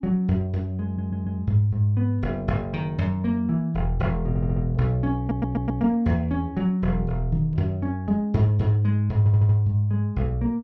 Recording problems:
audio stuttering; 4 times, first at 1 s

